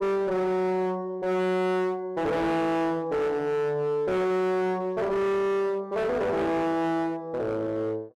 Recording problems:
distortion; hard clipping, uneven, signal-to-distortion ratio 6 dB

